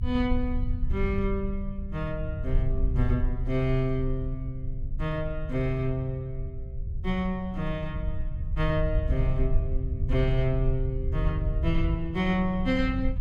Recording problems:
low-frequency rumble; below 74 Hz, strongest tone 26 Hz, SNR 2 dB

